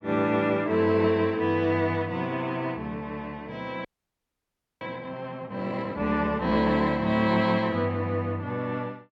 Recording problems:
audio freezing; at 4 s for 1 s

